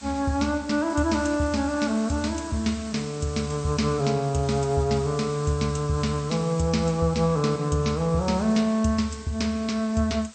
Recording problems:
lossy codec; MP2, then MP3, log-spectral distance 9 dB, nothing above 8.5 kHz
background hiss; slope 0 dB per octave, SNR 19 dB

